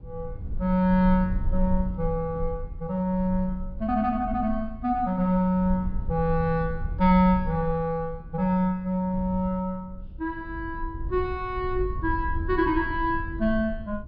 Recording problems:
treble missing; nothing above 5.5 kHz
low-frequency rumble; below 72 Hz, SNR 10 dB

